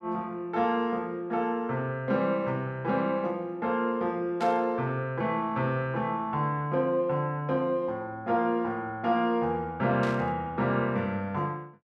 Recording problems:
burst of static; at 4.5 s and at 10 s; peak -9 dB vs average level

